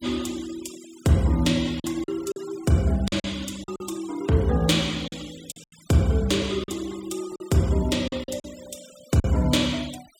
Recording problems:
denoising artefacts; signal-to-artefact ratio 20 dB
packet loss; 6% of the sound replaced, filled with silence

